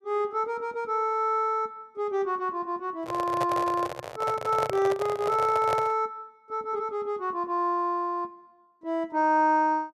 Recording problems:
handling noise; from 3 to 6 s; peak 0 dB vs average level

